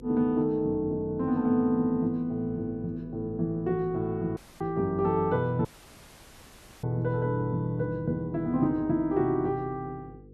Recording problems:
hum; 50 Hz, harmonics up to 500 Hz, SNR 20 dB
dropout; at 4.5 s and at 5.5 s for 1 s

